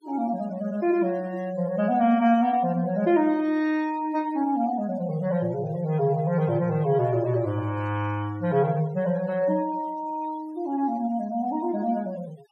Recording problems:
denoising artefacts; signal-to-artefact ratio 24 dB

